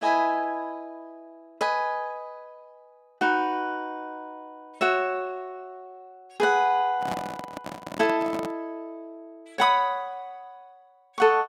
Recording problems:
handling noise; from 7 to 8.5 s; peak -2 dB vs average level

